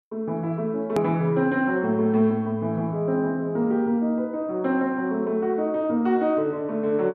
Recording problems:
edit click; at 1 s

